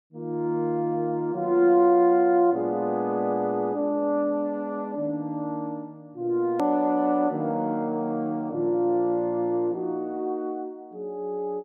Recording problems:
click at an edit; at 6.5 s

